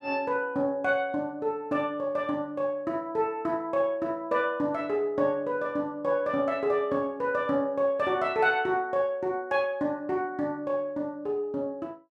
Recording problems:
none

